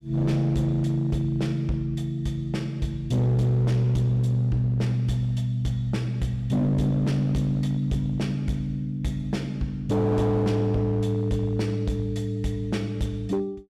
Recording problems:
distortion; hard clipping, signal-to-distortion ratio 12 dB

